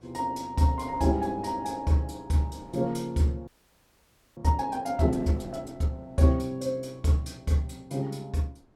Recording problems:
wind on the microphone; below 460 Hz, SNR 25 dB
audio freezing; at 3.5 s for 1 s

